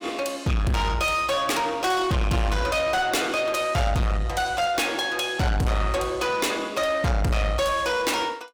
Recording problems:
distorted audio; soft clipping, signal-to-distortion ratio 6 dB

